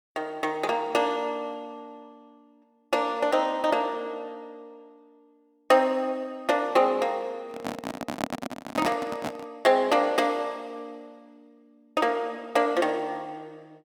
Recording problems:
handling noise; from 7.5 to 9.5 s; peak +2 dB vs average level

